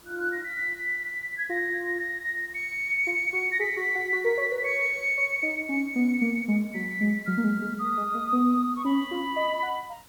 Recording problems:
hiss; slope -2 dB per octave, SNR 26 dB

